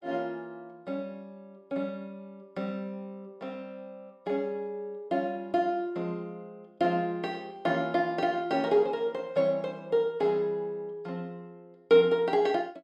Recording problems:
none

